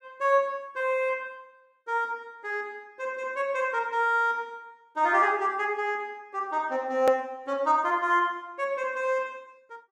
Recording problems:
click at an edit; at 7 s

